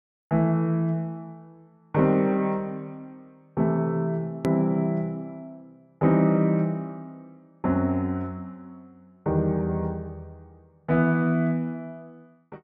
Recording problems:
edit click; at 4.5 s

